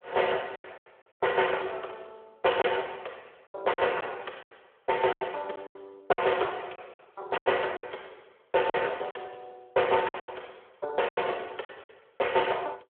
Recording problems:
telephone audio; 320 Hz to 3.4 kHz, Speex
packet loss; 10% of the sound replaced, filled with silence

